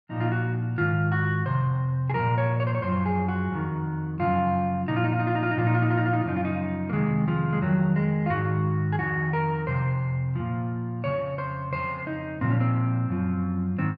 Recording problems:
none

